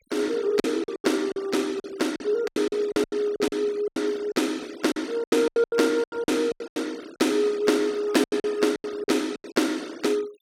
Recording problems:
denoising artefacts; signal-to-artefact ratio 21 dB
lost packets; 16% of the sound replaced, filled with silence

